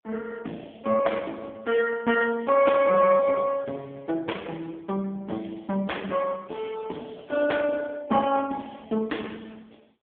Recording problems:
phone line; 220 Hz to 3.4 kHz, AMR-NB

